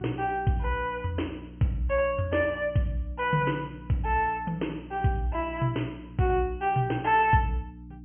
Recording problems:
treble cut off; nothing above 3.2 kHz
hum; 60 Hz, harmonics up to 300 Hz, SNR 17 dB

